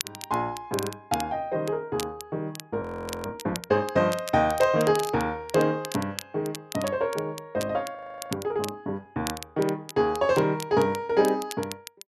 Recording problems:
crackling; vinyl, SNR 13 dB
audio freezing; at 3 s and at 8 s

